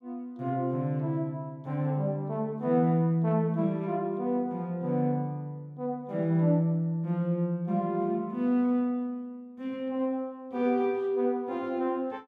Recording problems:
none

